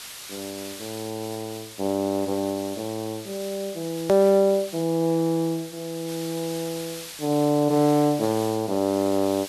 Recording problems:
hiss; slope +2 dB per octave, SNR 14 dB
hard cut with a click; at 4 s

